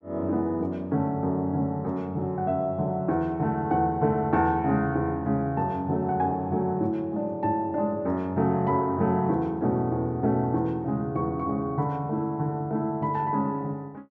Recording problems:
none

